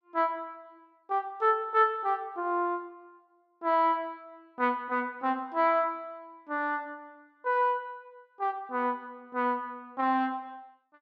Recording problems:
none

